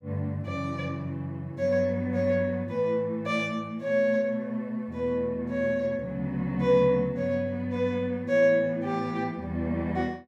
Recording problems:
none

